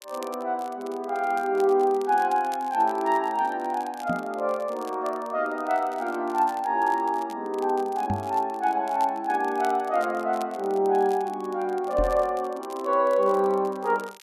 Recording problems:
crackling; vinyl, SNR 25 dB
microphone bump; at 4 s, at 8 s and at 12 s; peak 0 dB vs average level

